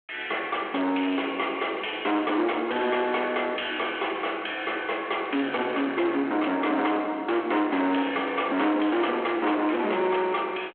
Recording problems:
telephone audio; 240 Hz to 3.3 kHz, G.726
distorted audio; soft clipping, signal-to-distortion ratio 8 dB

